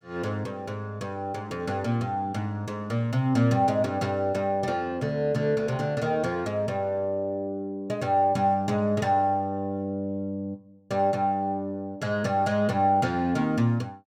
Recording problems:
none

